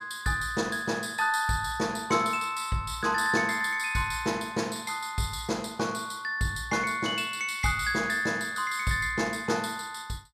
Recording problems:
none

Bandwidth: 14.5 kHz